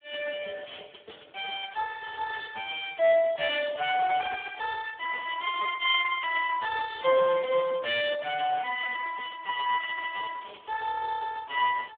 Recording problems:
telephone audio; 260 Hz to 3 kHz, Speex

